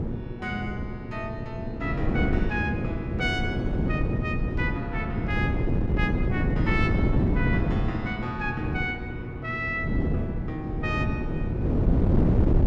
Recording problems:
hum; 60 Hz, harmonics up to 1.3 kHz, SNR 8 dB
wind noise; below 260 Hz, SNR -4 dB

